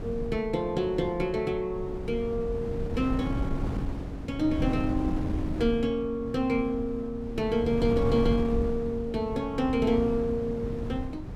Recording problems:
wind noise; below 220 Hz, SNR 6 dB

